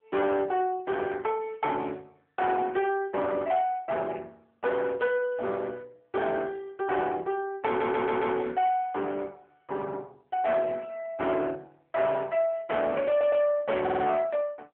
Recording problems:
telephone audio; 320 Hz to 3.5 kHz, AMR-NB
distorted audio; hard clipping, uneven, signal-to-distortion ratio 11 dB
audio stuttering; at 7.5 s, at 13 s and at 14 s

